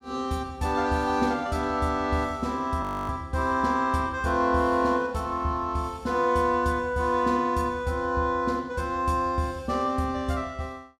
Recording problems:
audio freezing; at 3 s

